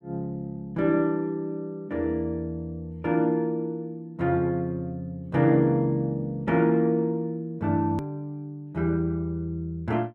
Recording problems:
edit click; at 8 s

